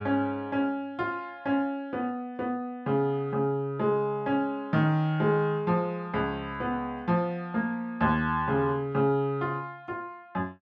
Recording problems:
none

